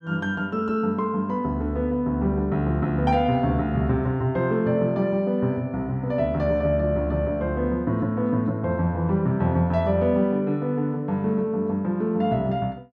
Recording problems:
none

